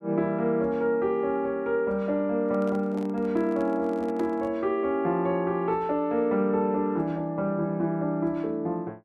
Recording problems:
microphone handling noise; from 2.5 to 4.5 s; peak -11 dB vs average level

